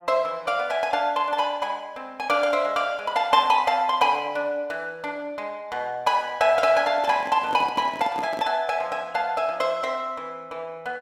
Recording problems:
microphone handling noise; from 7 to 8.5 s; peak -7 dB vs average level

